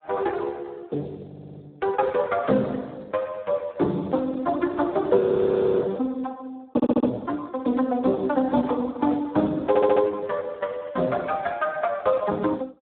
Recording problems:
phone line; 170 Hz to 2.1 kHz, Speex
audio stuttering; at 1.5 s, at 6.5 s and at 9.5 s
frozen audio; at 5 s for 0.5 s

